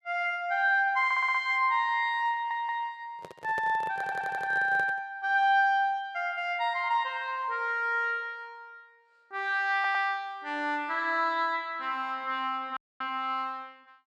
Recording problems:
audio stuttering; 4 times, first at 1 s
handling noise; from 3 to 5 s; peak -8 dB vs average level
audio cutting out; at 13 s

